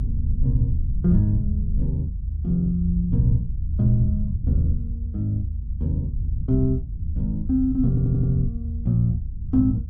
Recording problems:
low-frequency rumble; below 80 Hz, SNR 3 dB
audio stuttering; at 8 s

